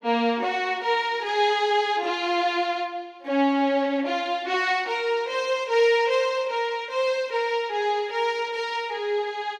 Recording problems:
none

